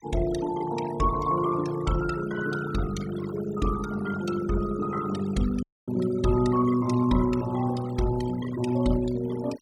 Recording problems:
denoising artefacts; signal-to-artefact ratio 14 dB
audio cutting out; at 5.5 s

